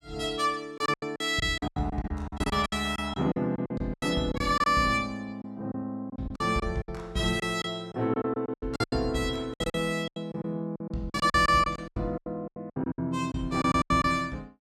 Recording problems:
lost packets; 17% of the sound replaced, filled with silence

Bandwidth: 16 kHz